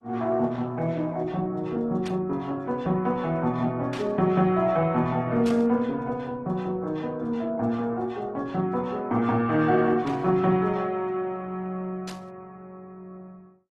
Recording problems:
lossy codec; Opus, log-spectral distance 2 dB
static burst; 5 times, first at 2 s; peak -9 dB vs average level

